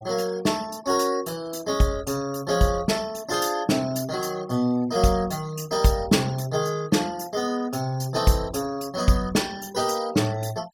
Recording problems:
denoising artefacts; signal-to-artefact ratio 20 dB

